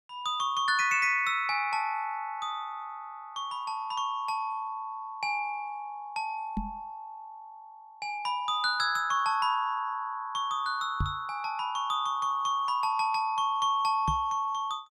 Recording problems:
microphone thump; at 6.5 s, at 11 s and at 14 s; peak +2 dB vs average level

